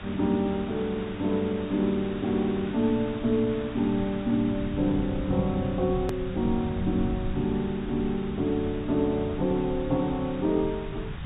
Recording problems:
treble missing; nothing above 4 kHz
background hiss; SNR 15 dB
rumble; below 150 Hz, SNR 11 dB
edit click; at 6 s

